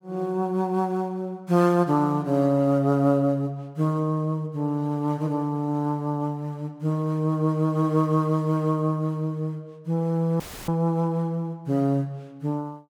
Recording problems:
dropout; at 10 s; filled with static

